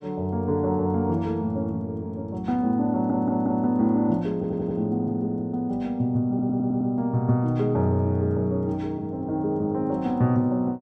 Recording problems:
audio stuttering; at 3 s, at 4.5 s and at 6.5 s

